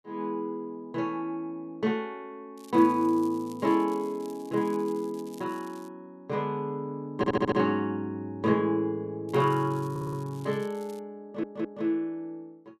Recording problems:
crackle; from 2.5 to 6 s and from 9.5 to 11 s; loose cable, SNR 25 dB
audio stuttering; at 7 s, at 10 s and at 11 s

